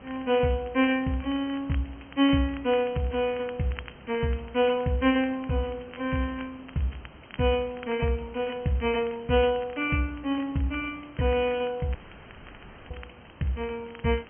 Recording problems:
treble cut off; nothing above 3.2 kHz
background hiss; SNR 22 dB
crackle; vinyl, SNR 23 dB
audio cutting out; at 12 s for 1 s

